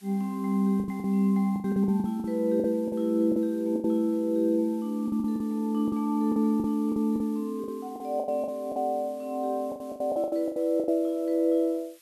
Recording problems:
background hiss; slope +2 dB per octave, SNR 29 dB
lost packets; 13% of the sound replaced, filled with the last packet

